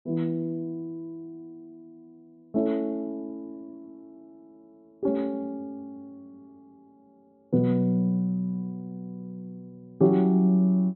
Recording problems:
low-pass filter; nothing above 4.1 kHz

